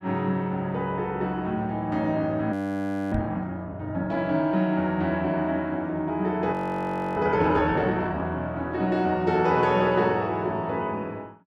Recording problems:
audio freezing; at 2.5 s for 0.5 s and at 6.5 s for 0.5 s
knock on the microphone; at 3 s; peak +2 dB vs average level

